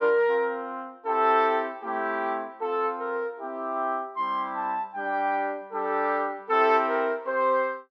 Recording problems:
none

